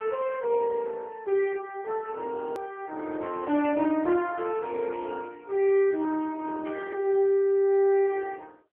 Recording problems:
telephone audio; 220 Hz to 3.1 kHz, AMR-NB
edit click; at 2.5 s

